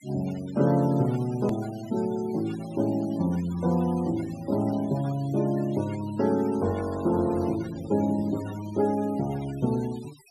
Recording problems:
noise reduction artefacts; signal-to-artefact ratio 20 dB
click at an edit; at 1.5 s

